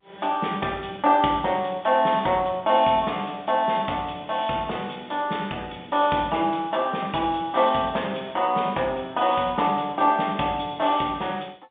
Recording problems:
telephone audio; 110 Hz to 3.6 kHz, G.711

